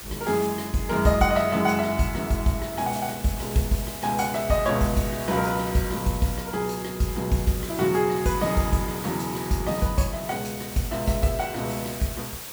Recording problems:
background hiss; slope -1 dB per octave, SNR 11 dB

